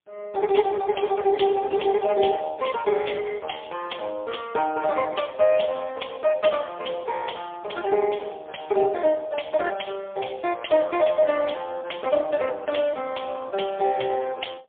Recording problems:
phone line; 340 Hz to 3.1 kHz, AMR-NB, then MP3

